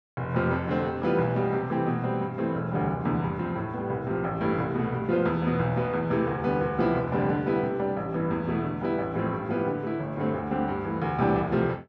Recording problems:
none

